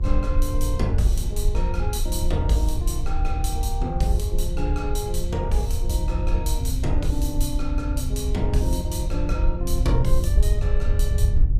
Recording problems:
mains hum; 60 Hz, harmonics up to 1.2 kHz, SNR 19 dB
low-frequency rumble; below 68 Hz, SNR -3 dB

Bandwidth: 15 kHz